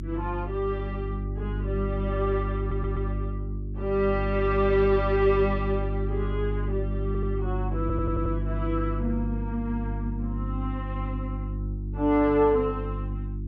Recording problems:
treble missing; nothing above 8 kHz
electrical hum; 50 Hz, harmonics up to 350 Hz, SNR 3 dB
stutter; at 2.5 s, at 7 s and at 8 s

